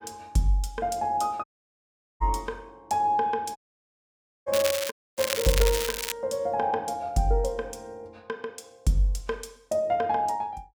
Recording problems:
dropout; at 1.5 s for 1 s, at 3.5 s for 1 s and at 5 s
crackling; from 4.5 to 6 s; loose cable, SNR 3 dB

